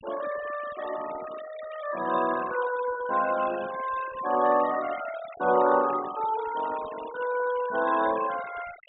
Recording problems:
treble cut off; nothing above 4 kHz
denoising artefacts; signal-to-artefact ratio 15 dB

